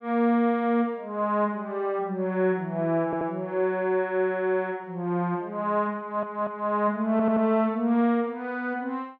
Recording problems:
stutter; at 3 s, at 6 s and at 7 s

